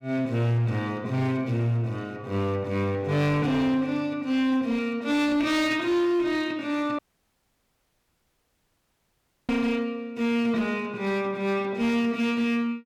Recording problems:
distorted audio; hard clipping, uneven, signal-to-distortion ratio 11 dB
dropout; at 7 s for 2.5 s

